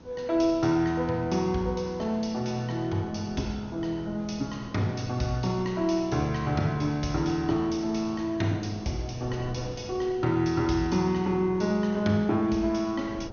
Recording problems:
treble cut off; nothing above 6.6 kHz
background hiss; slope -4 dB per octave, SNR 30 dB
wind on the microphone; below 410 Hz, SNR 20 dB

